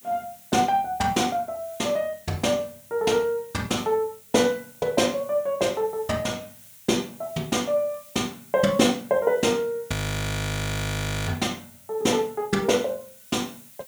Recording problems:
background hiss; slope +4 dB per octave, SNR 21 dB
frozen audio; at 10 s for 1.5 s

